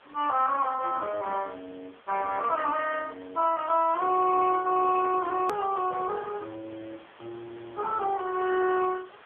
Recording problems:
telephone audio; 300 Hz to 3.1 kHz, AMR-NB
background hiss; SNR 25 dB
hard cut with a click; at 5.5 s

